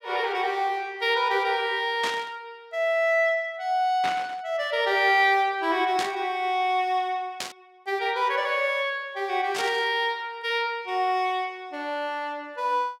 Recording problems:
burst of static; 5 times, first at 2 s; peak -1 dB vs average level

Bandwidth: 17 kHz